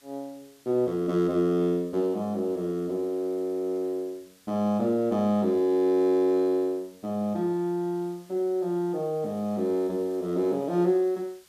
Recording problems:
background hiss; slope +1 dB per octave, SNR 30 dB

